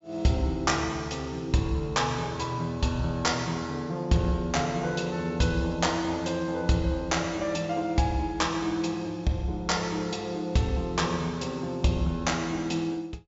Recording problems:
treble cut off; nothing above 7.4 kHz

